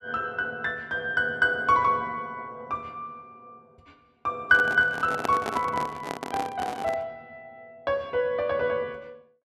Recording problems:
handling noise; from 4.5 to 7 s; peak +1 dB vs average level

